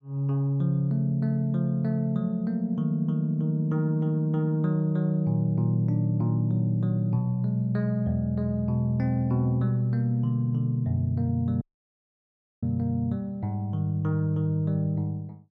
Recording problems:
audio cutting out; at 12 s for 1 s

